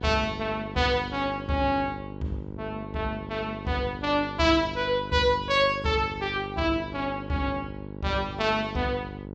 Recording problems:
treble cut off; nothing above 7.8 kHz
electrical hum; 50 Hz, harmonics up to 1.1 kHz, SNR 11 dB

